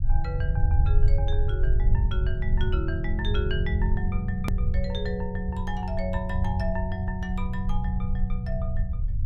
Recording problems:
rumble; below 78 Hz, SNR -4 dB
edit click; at 4.5 s

